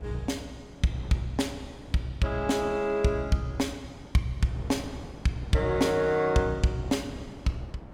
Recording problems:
wind noise; below 450 Hz, SNR 17 dB

